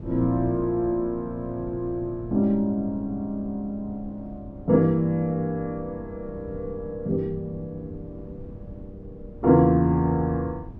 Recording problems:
rumble; below 200 Hz, SNR 17 dB

